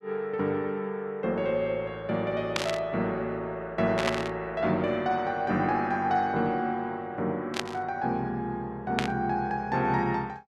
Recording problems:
static burst; 4 times, first at 2.5 s; peak +4 dB vs average level

